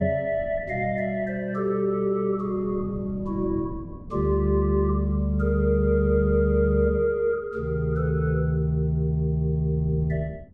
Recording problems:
wind on the microphone; below 210 Hz, SNR 18 dB

